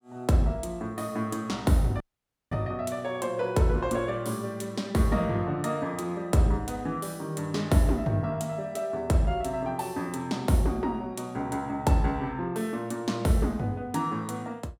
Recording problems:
dropout; at 2 s for 0.5 s

